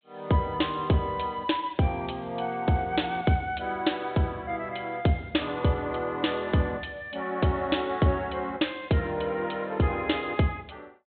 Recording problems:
treble cut off; nothing above 4 kHz

